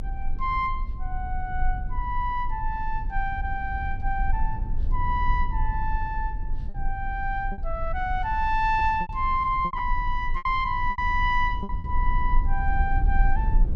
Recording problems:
rumble; below 48 Hz, strongest tone 22 Hz, SNR 3 dB
packet loss; 4% of the sound replaced, filled with repeated pitch periods

